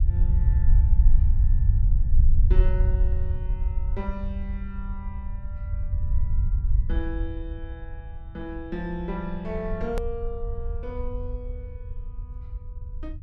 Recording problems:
low-frequency rumble; below 66 Hz, SNR -10 dB
edit click; at 10 s

